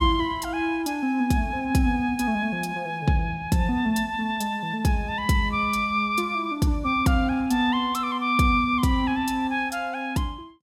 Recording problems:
none

